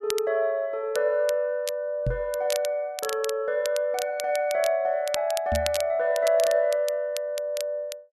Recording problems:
crackling; vinyl, SNR 12 dB
knock on the microphone; at 2 s and at 5.5 s; peak +1 dB vs average level

